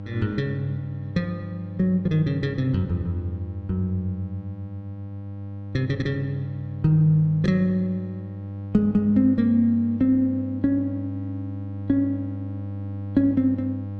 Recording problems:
electrical hum; 50 Hz, harmonics up to 800 Hz, SNR 11 dB

